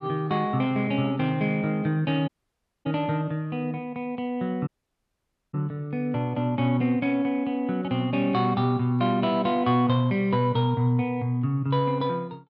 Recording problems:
audio cutting out; at 2.5 s for 0.5 s and at 4.5 s for 1 s

